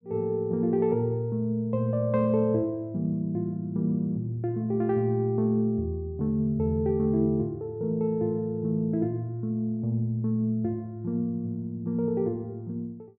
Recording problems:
none

